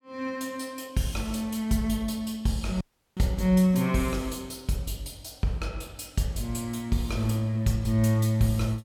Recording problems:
audio cutting out; at 3 s

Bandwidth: 17 kHz